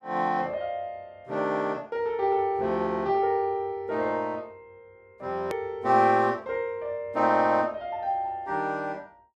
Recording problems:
edit click; at 5.5 s

